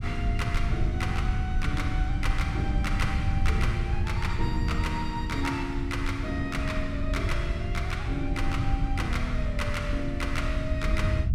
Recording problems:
low-frequency rumble; below 96 Hz, SNR -2 dB

